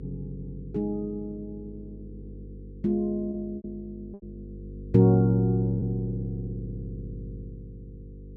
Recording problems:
hum; 50 Hz, harmonics up to 500 Hz, SNR 14 dB
lost packets; 3% of the sound replaced, filled with repeated pitch periods

